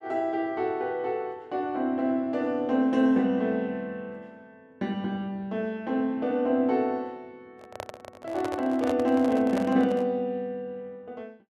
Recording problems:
handling noise; from 7.5 to 10 s; peak -2 dB vs average level

